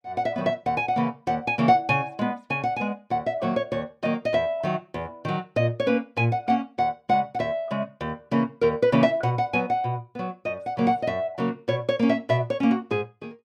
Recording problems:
none

